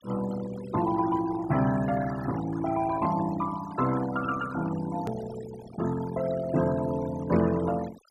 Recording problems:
noise reduction artefacts; signal-to-artefact ratio 14 dB
hard cut with a click; at 5 s

